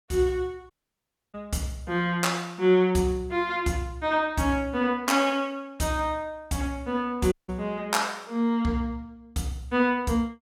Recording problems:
dropout; at 0.5 s for 0.5 s and at 7.5 s

